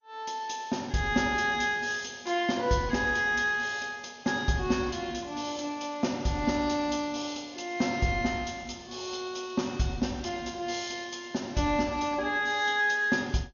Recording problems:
lossy codec; MP2, log-spectral distance 7 dB, nothing above 6.7 kHz

